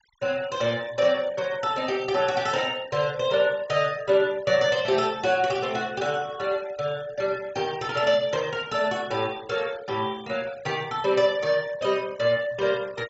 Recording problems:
low-pass filter; nothing above 8 kHz
denoising artefacts; signal-to-artefact ratio 21 dB

